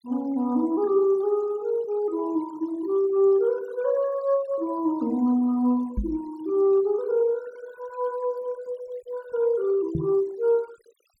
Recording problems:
noise reduction artefacts; signal-to-artefact ratio 24 dB
microphone bump; at 6 s and at 10 s; peak 0 dB vs average level

